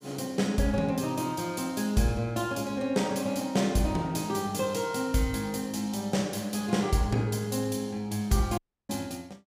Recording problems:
audio cutting out; at 8.5 s

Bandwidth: 15.5 kHz